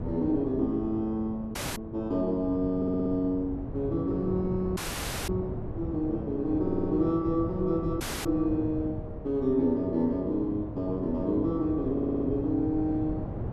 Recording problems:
wind on the microphone; below 300 Hz, SNR 8 dB
dropout; at 1.5 s, at 5 s for 0.5 s and at 8 s
stutter; at 3 s, at 6.5 s and at 12 s

